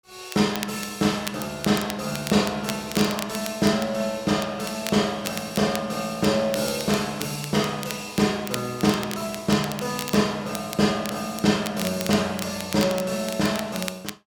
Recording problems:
crackle; vinyl, SNR 12 dB

